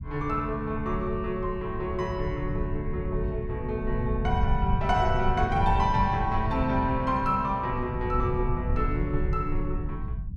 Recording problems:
rumble; below 110 Hz, SNR 4 dB

